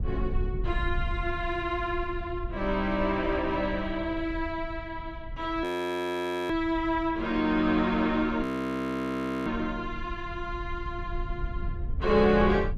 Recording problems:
low-frequency rumble; below 76 Hz, SNR 10 dB
audio freezing; at 5.5 s for 1 s and at 8.5 s for 1 s

